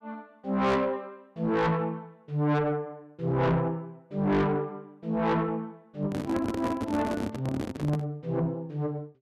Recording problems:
distortion; soft clipping, signal-to-distortion ratio 7 dB
microphone handling noise; from 6 to 8 s; peak +1 dB vs average level

